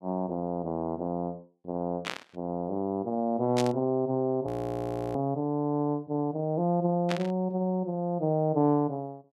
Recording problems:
burst of static; at 2 s, at 3.5 s and at 7 s; peak +1 dB vs average level
audio freezing; at 4.5 s for 0.5 s

